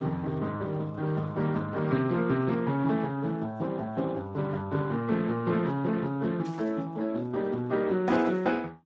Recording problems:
codec artefacts; Speex, log-spectral distance 3 dB
burst of static; at 6.5 s and at 8 s; peak -16 dB vs average level

